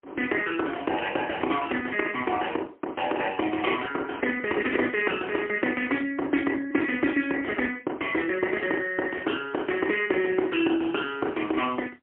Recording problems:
phone line; 280 Hz to 3.2 kHz, AMR-NB, then MP3

